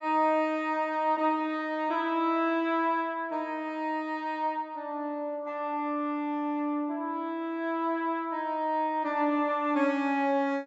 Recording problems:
low-pass filter; nothing above 8 kHz

